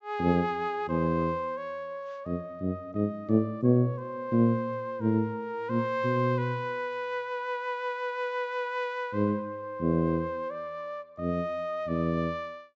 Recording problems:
low-pass filter; nothing above 8 kHz

